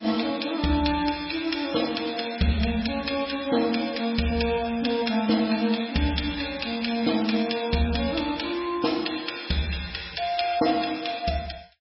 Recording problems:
lossy compression; MP3, log-spectral distance 8 dB, nothing above 5.3 kHz

